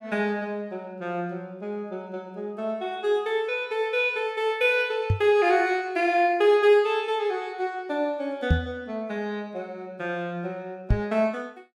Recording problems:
microphone thump; at 5 s, at 8.5 s and at 11 s; peak +7 dB vs average level

